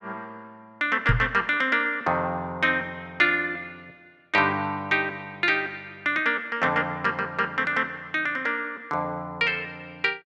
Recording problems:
microphone thump; at 1 s; peak +6 dB vs average level

